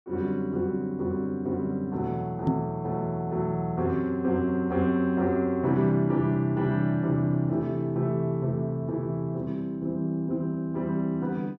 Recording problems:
microphone bump; at 2.5 s; peak +7 dB vs average level

